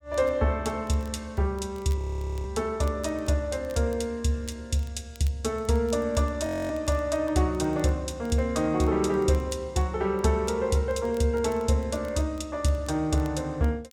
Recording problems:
crackling; vinyl, SNR 28 dB
frozen audio; at 2 s and at 6.5 s

